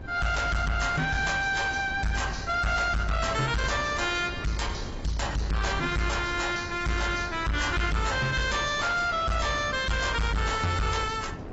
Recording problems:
lossy codec; AAC, log-spectral distance 5 dB, nothing above 7.6 kHz
distortion; soft clipping, signal-to-distortion ratio 6 dB
wind on the microphone; below 480 Hz, SNR 12 dB

